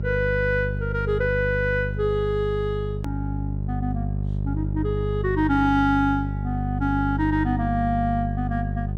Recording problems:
hum; 50 Hz, harmonics up to 450 Hz, SNR 3 dB
click at an edit; at 3 s

